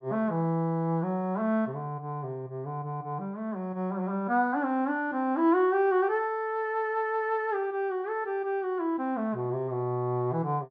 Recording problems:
none

